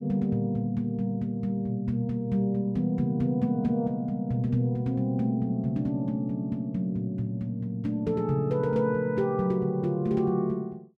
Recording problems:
none

